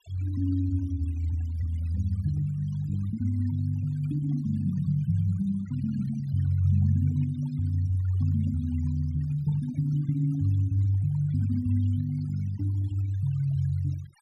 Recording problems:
denoising artefacts; signal-to-artefact ratio 22 dB

